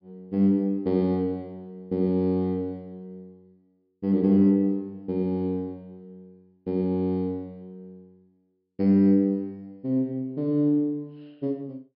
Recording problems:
treble missing; nothing above 5.5 kHz

